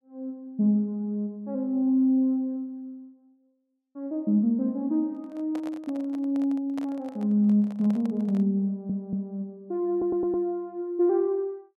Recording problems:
microphone handling noise; from 5 to 8.5 s; peak -11 dB vs average level
stutter; at 8.5 s and at 10 s

